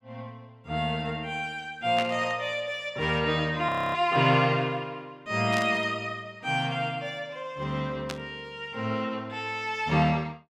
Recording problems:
burst of static; at 2 s, at 5.5 s and at 8 s; peak -2 dB vs average level
frozen audio; at 3.5 s

